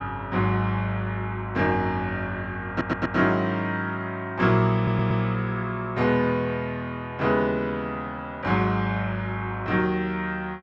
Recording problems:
audio stuttering; at 2.5 s and at 5 s

